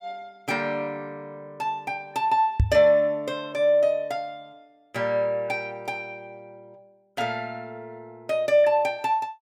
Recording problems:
knock on the microphone; at 2.5 s; peak +6 dB vs average level

